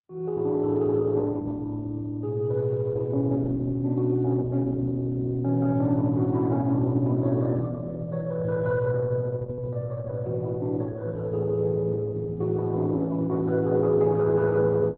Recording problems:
lossy compression; Opus, log-spectral distance 2 dB

